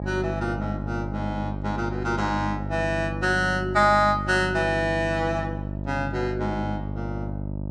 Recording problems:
hum; 50 Hz, harmonics up to 900 Hz, SNR 6 dB

